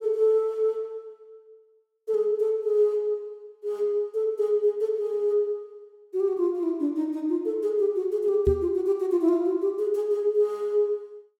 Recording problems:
knock on the microphone; at 8.5 s; peak +1 dB vs average level

